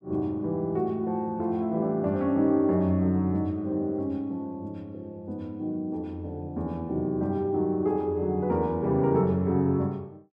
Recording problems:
none

